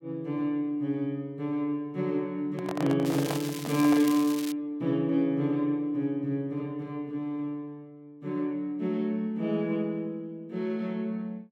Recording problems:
handling noise; from 2.5 to 4 s; peak -1 dB vs average level
crackle; from 3 to 4.5 s; loose cable, SNR 10 dB

